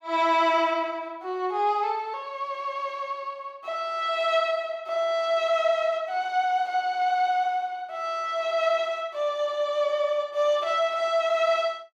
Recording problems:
none

